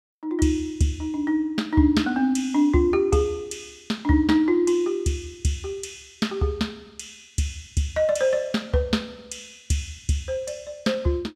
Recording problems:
none

